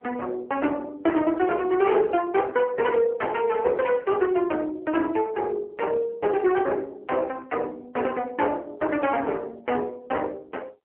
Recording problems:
phone line; 260 Hz to 3.1 kHz, AMR-NB

